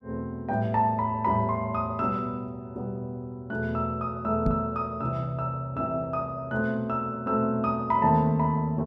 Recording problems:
microphone thump; at 4.5 s; peak +5 dB vs average level

